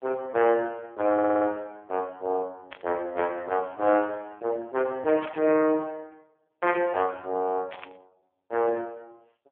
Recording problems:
telephone audio; 240 Hz to 3.2 kHz, AMR-NB
audio stuttering; at 1 s
static burst; at 2.5 s, at 5 s and at 7.5 s; peak -9 dB vs average level

